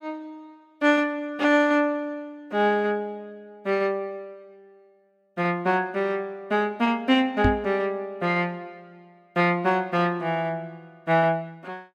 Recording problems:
microphone bump; at 7.5 s; peak +6 dB vs average level

